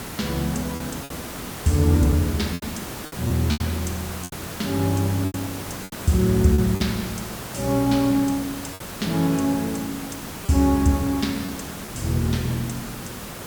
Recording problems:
background hiss; slope -4 dB per octave, SNR 10 dB
lost packets; 5% of the sound replaced, filled with repeated pitch periods

